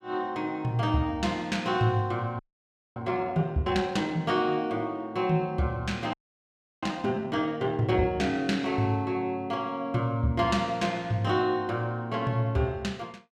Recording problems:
frozen audio; at 2.5 s for 0.5 s and at 6 s for 0.5 s

